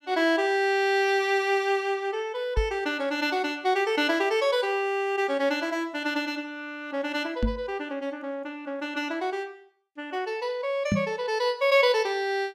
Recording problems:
knock on the microphone; at 2.5 s, at 7.5 s and at 11 s; peak +4 dB vs average level

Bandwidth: 14.5 kHz